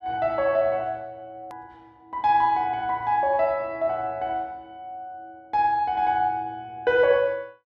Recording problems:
hard cut with a click; at 1.5 s

